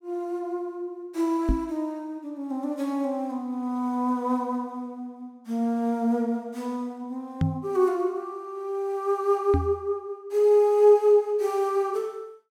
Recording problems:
microphone bump; at 1.5 s, at 7.5 s and at 9.5 s; peak +5 dB vs average level

